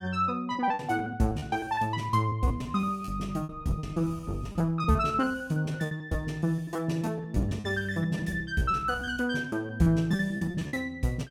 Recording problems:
packet loss; 17% of the sound replaced, filled with repeated pitch periods

